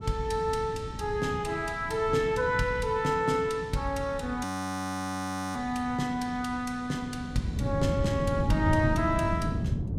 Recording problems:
wind noise; below 190 Hz, SNR 6 dB
audio freezing; at 4.5 s for 1 s

